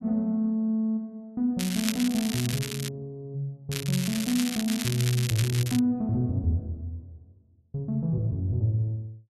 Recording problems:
crackle; from 1.5 to 3 s and from 3.5 to 6 s; loose cable, SNR 6 dB

